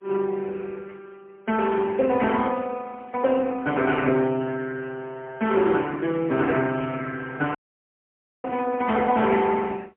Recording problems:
phone line; 220 Hz to 3.1 kHz, AMR-NB, then MP3
dropout; at 7.5 s for 1 s

